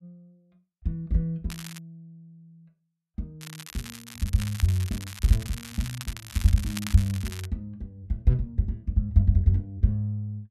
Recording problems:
crackle; at 1.5 s and from 3.5 to 7.5 s; loose cable, SNR 13 dB

